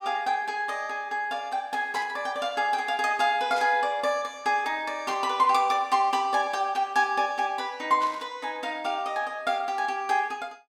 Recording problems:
static burst; 4 times, first at 2 s; peak -10 dB vs average level

